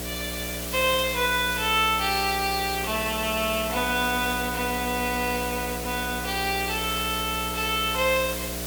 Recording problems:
hum; 60 Hz, harmonics up to 720 Hz, SNR 10 dB
hiss; slope 0 dB per octave, SNR 7 dB

